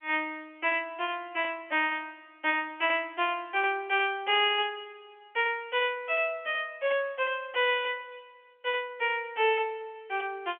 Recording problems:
telephone audio; 300 Hz to 3.3 kHz, G.711

